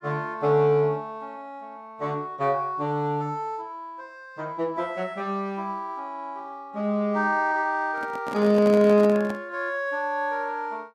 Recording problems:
handling noise; from 8 to 9.5 s; peak -4 dB vs average level

